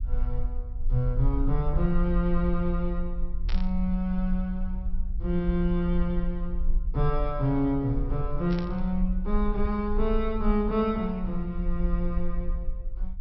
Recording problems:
treble cut off; nothing above 5.6 kHz
low-frequency rumble; below 44 Hz, strongest tone 20 Hz, SNR 4 dB
static burst; at 3.5 s and at 8.5 s; peak -7 dB vs average level

